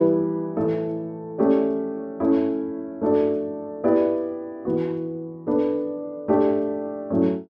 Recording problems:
none

